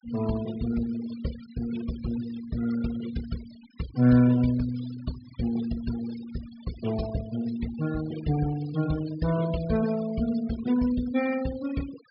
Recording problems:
treble cut off; nothing above 5.5 kHz
denoising artefacts; signal-to-artefact ratio 16 dB

